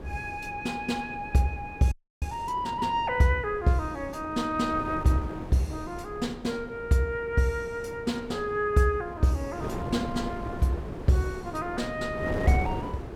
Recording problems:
wind on the microphone; below 480 Hz, SNR 10 dB
audio freezing; at 2 s

